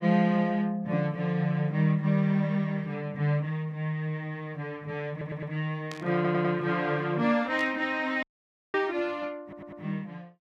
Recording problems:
stutter; at 5 s, at 6 s and at 9.5 s
static burst; at 6 s and at 7.5 s; peak -9 dB vs average level
dropout; at 8 s for 0.5 s

